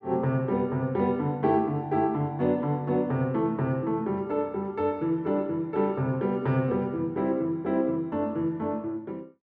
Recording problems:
none

